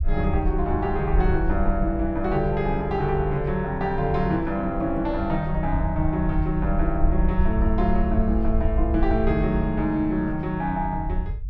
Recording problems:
low-frequency rumble; below 66 Hz, SNR 4 dB

